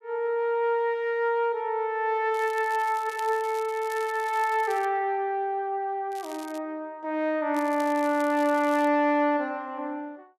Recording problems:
crackle; from 2.5 to 5 s, at 6 s and from 7.5 to 9 s; loose cable, SNR 21 dB

